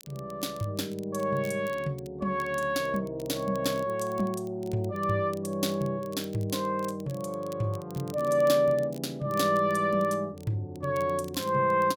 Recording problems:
crackle; vinyl, SNR 24 dB

